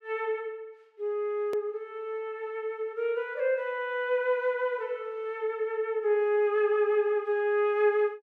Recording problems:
click at an edit; at 1.5 s

